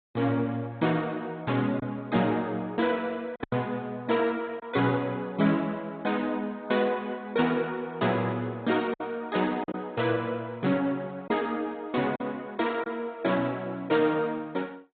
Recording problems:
treble cut off; nothing above 3.8 kHz
lossy compression; MP2, log-spectral distance 3 dB
lost packets; 2% of the sound replaced, filled with silence

